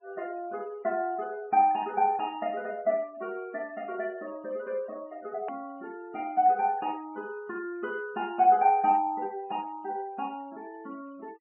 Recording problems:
low-pass filter; nothing above 3 kHz
denoising artefacts; signal-to-artefact ratio 28 dB
edit click; at 5.5 s

